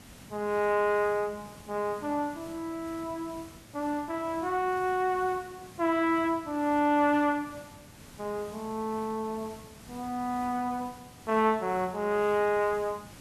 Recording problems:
background hiss; slope -3 dB per octave, SNR 20 dB

